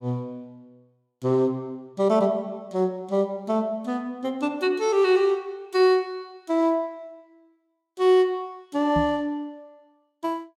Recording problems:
microphone thump; at 9 s; peak -1 dB vs average level

